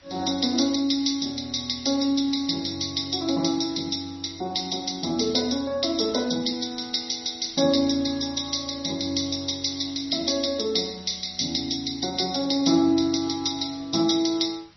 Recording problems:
lossy codec; MP3, log-spectral distance 11 dB, nothing above 5.8 kHz
background hiss; slope 0 dB per octave, SNR 29 dB

